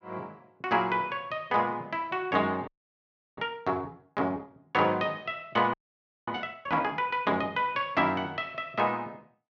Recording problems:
frozen audio; at 2.5 s for 0.5 s and at 5.5 s for 0.5 s

